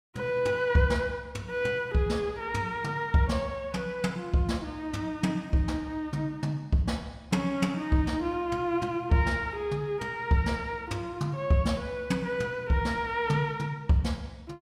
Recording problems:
none

